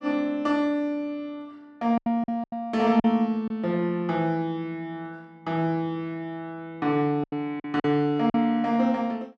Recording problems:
packet loss; 5% of the sound replaced, filled with silence

